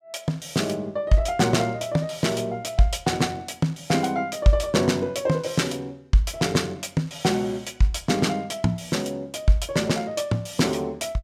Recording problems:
none

